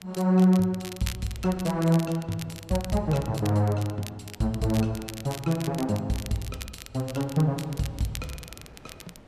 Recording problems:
wind on the microphone; below 670 Hz, SNR 26 dB
crackling; vinyl, SNR 15 dB

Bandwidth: 14 kHz